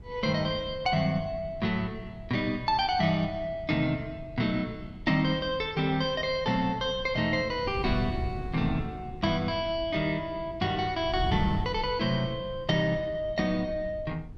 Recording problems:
wind on the microphone; below 120 Hz, SNR 13 dB

